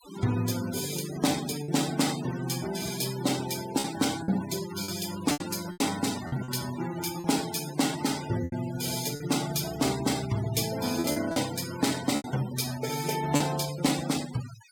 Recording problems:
noise reduction artefacts; signal-to-artefact ratio 12 dB
packet loss; 5% of the sound replaced, filled with repeated pitch periods

